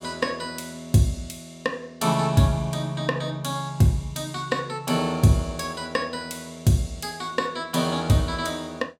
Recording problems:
none

